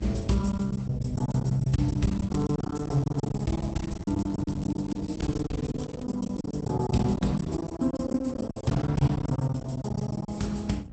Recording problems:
lossy compression; Opus, log-spectral distance 3 dB, nothing above 8 kHz
hum; 60 Hz, harmonics up to 840 Hz, SNR 20 dB
rumble; below 100 Hz, SNR 12 dB
lost packets; 18% of the sound replaced, filled with silence
crackling; from 2 to 6 s; loose cable, SNR 24 dB

